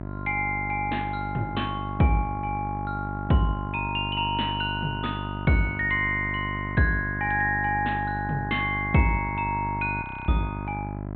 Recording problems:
treble cut off; nothing above 4 kHz
electrical hum; 50 Hz, harmonics up to 1.4 kHz, SNR 7 dB
audio freezing; at 10 s

